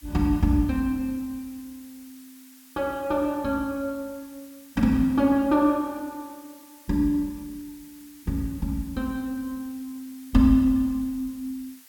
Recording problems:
background hiss; SNR 24 dB

